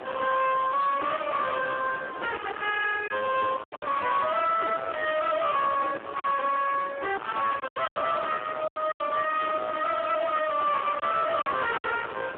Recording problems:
phone line; 260 Hz to 3.1 kHz, Speex
distortion; soft clipping, signal-to-distortion ratio 8 dB
wind on the microphone; below 1.6 kHz, SNR 14 dB
packet loss; 5% of the sound replaced, filled with silence

